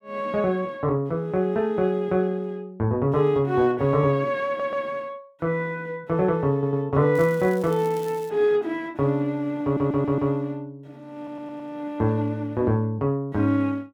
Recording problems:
stutter; 4 times, first at 4.5 s
crackling; from 7 to 8.5 s; loose cable, SNR 23 dB

